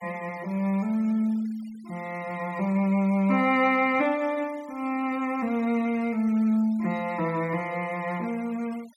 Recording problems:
denoising artefacts; signal-to-artefact ratio 24 dB

